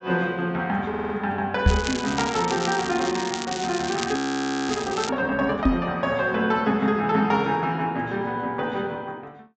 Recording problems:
treble cut off; nothing above 8 kHz
audio stuttering; at 1 s
microphone bump; at 1.5 s and at 5.5 s; peak +9 dB vs average level
crackle; from 1.5 to 5 s; loose cable, SNR 8 dB
frozen audio; at 4 s for 0.5 s

